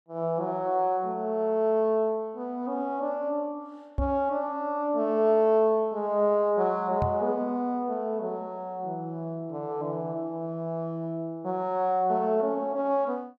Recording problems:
knock on the microphone; at 4 s and at 7 s; peak +1 dB vs average level

